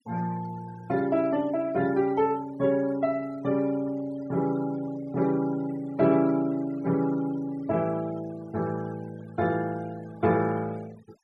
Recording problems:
noise reduction artefacts; signal-to-artefact ratio 22 dB

